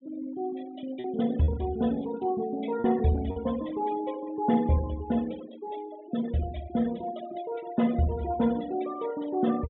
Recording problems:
treble missing; nothing above 3.7 kHz
denoising artefacts; signal-to-artefact ratio 17 dB
lost packets; 1.7% of the sound replaced, filled with repeated pitch periods

